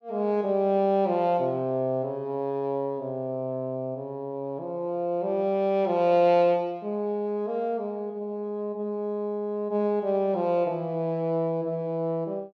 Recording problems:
none

